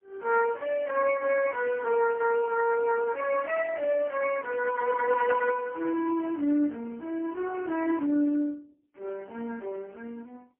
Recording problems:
phone line; 240 Hz to 2.8 kHz, AMR-NB, then MP3

